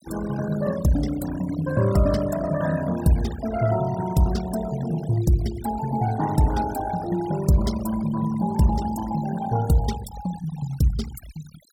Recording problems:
denoising artefacts; signal-to-artefact ratio 15 dB

